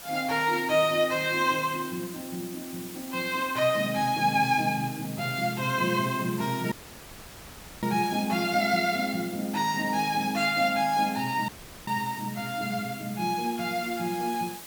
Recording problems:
background hiss; slope -1 dB per octave, SNR 14 dB
dropout; at 6.5 s for 1 s and at 11 s

